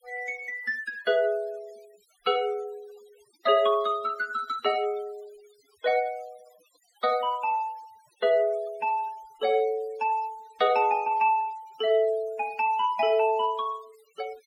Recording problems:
denoising artefacts; signal-to-artefact ratio 23 dB

